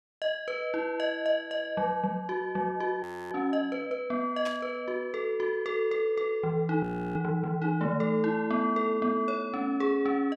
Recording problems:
audio freezing; at 3 s and at 7 s
static burst; at 4.5 s; peak -7 dB vs average level

